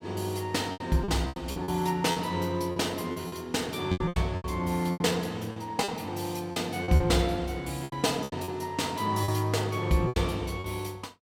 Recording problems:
packet loss; 12% of the sound replaced, filled with repeated pitch periods

